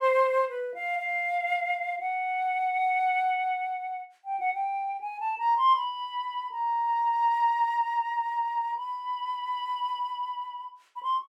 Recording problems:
none

